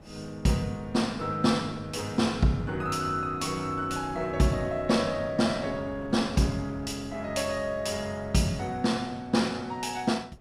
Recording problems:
wind on the microphone; below 500 Hz, SNR 19 dB

